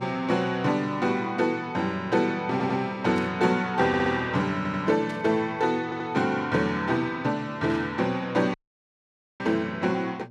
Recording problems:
hum; 60 Hz, harmonics up to 840 Hz, SNR 21 dB
stutter; 4 times, first at 2.5 s
burst of static; at 3 s, at 5 s and at 7.5 s; peak -13 dB vs average level
dropout; at 8.5 s for 1 s

